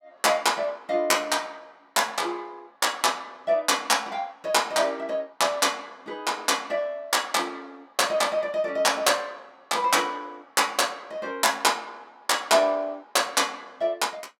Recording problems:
none

